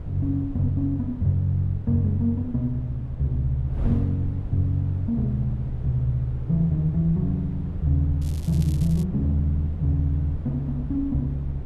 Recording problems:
wind noise; below 130 Hz, SNR 12 dB
crackling; at 8 s; loose cable, SNR 22 dB

